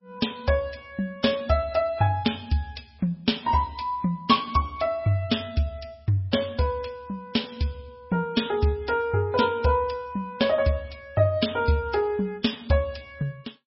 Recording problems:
lossy compression; MP3, log-spectral distance 3 dB, nothing above 5.5 kHz

